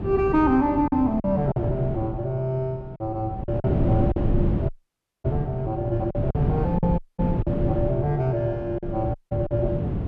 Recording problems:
wind on the microphone; below 240 Hz, SNR 3 dB
lost packets; 6% of the sound replaced, filled with silence
audio cutting out; at 4.5 s for 0.5 s, at 7 s and at 9 s

